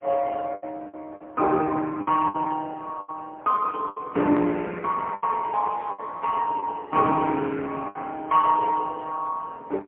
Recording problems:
phone line; 220 Hz to 3.4 kHz, AMR-NB, then MP3
lost packets; 8% of the sound replaced, filled with the last packet

